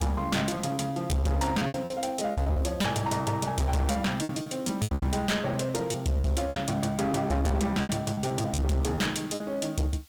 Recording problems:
distorted audio; hard clipping, uneven, signal-to-distortion ratio 7 dB
hiss; slope +2 dB per octave, SNR 28 dB
packet loss; 13% of the sound replaced, filled with repeated pitch periods

